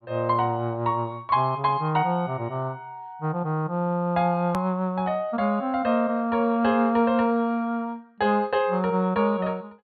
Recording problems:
low-pass filter; nothing above 4.3 kHz
hard cut with a click; at 4.5 s

